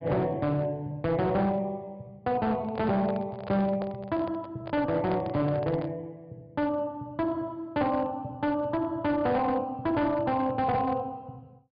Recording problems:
treble missing; nothing above 5 kHz
distorted audio; hard clipping, signal-to-distortion ratio 11 dB
microphone handling noise; from 2.5 to 6 s; peak -4 dB vs average level

